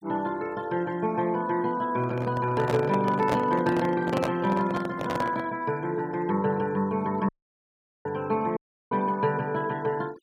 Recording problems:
denoising artefacts; signal-to-artefact ratio 23 dB
handling noise; from 2 to 5.5 s; peak +3 dB vs average level
audio cutting out; at 7.5 s for 1 s and at 8.5 s

